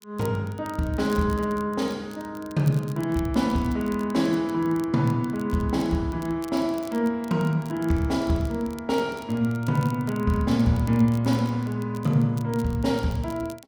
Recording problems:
crackling; vinyl, SNR 24 dB

